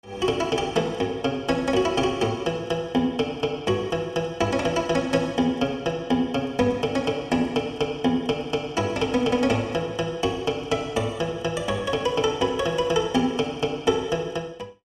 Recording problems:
none

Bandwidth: 16 kHz